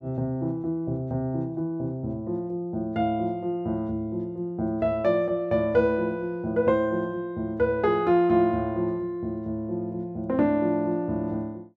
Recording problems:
none

